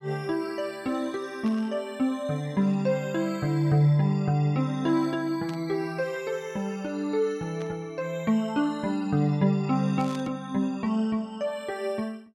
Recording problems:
burst of static; 4 times, first at 1.5 s; peak -12 dB vs average level

